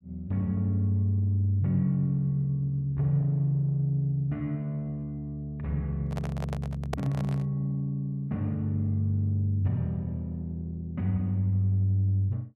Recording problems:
microphone handling noise; from 6 to 7.5 s; peak -1 dB vs average level

